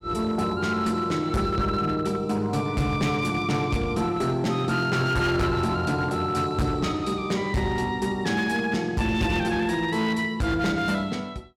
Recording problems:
distorted audio; hard clipping, uneven, signal-to-distortion ratio 10 dB

